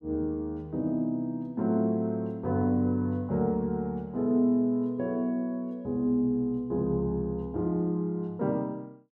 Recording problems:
none

